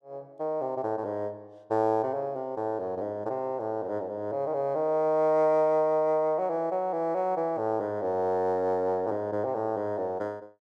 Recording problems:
none

